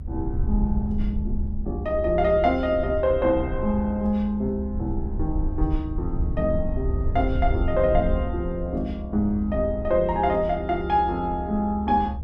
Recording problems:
low-frequency rumble; below 72 Hz, SNR 6 dB

